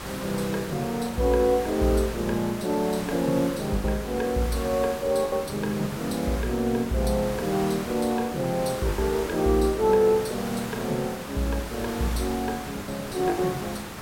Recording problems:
hiss; slope -4 dB per octave, SNR 10 dB
packet loss; 3% of the sound replaced, filled with the last packet

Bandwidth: 16.5 kHz